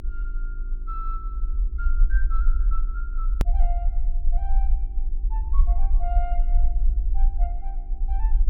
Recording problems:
electrical hum; 50 Hz, harmonics up to 400 Hz, SNR 12 dB
low-frequency rumble; below 42 Hz, strongest tone 22 Hz, SNR -14 dB
hard cut with a click; at 3.5 s

